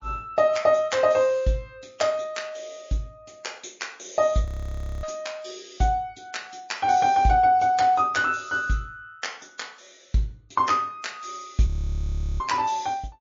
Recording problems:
lossy codec; MP3, log-spectral distance 5 dB, nothing above 6.5 kHz
frozen audio; at 4.5 s for 0.5 s and at 12 s for 0.5 s

